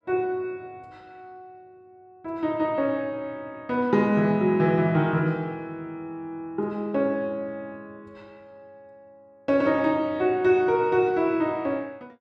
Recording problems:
none

